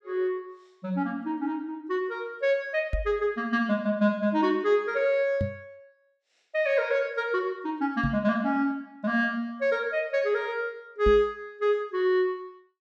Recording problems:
knock on the microphone; 4 times, first at 3 s; peak +1 dB vs average level

